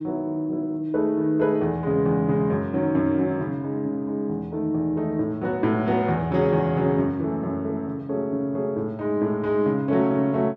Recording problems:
none

